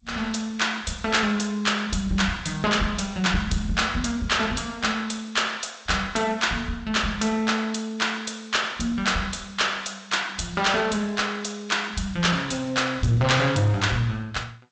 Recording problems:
lossy compression; G.722, then Vorbis, log-spectral distance 6 dB, nothing above 8 kHz
distortion; soft clipping, signal-to-distortion ratio 11 dB

